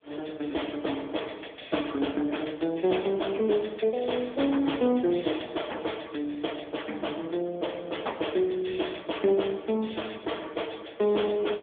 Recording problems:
phone line; 240 Hz to 3.5 kHz, AMR-NB

